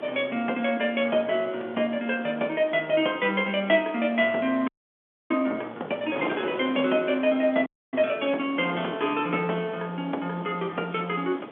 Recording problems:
telephone audio; 220 Hz to 3.5 kHz, G.711
wind noise; below 930 Hz, SNR 13 dB
audio freezing; at 4.5 s for 0.5 s and at 7.5 s

